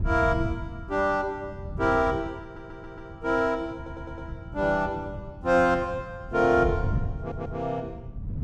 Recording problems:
wind on the microphone; below 140 Hz, SNR 10 dB
audio stuttering; at 2.5 s, at 4 s and at 7 s

